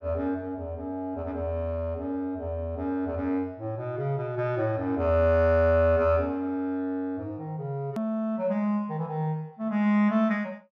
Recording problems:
treble missing; nothing above 8 kHz
click at an edit; at 8 s

